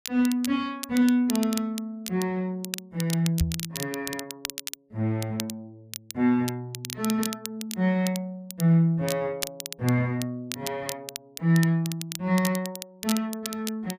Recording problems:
crackle; vinyl, SNR 10 dB
microphone bump; at 3.5 s; peak +5 dB vs average level

